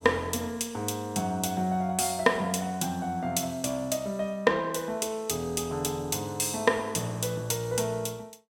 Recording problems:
none

